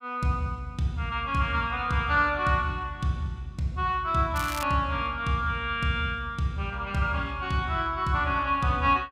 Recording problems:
crackling; at 4.5 s; loose cable, SNR 12 dB

